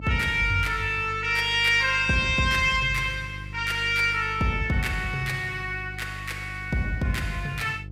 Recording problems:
hum; 50 Hz, harmonics up to 500 Hz, SNR 15 dB

